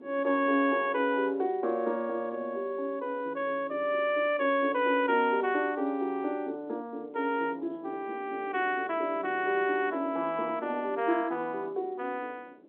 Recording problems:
telephone audio; 240 Hz to 3.5 kHz, G.711
wind on the microphone; below 440 Hz, SNR 21 dB

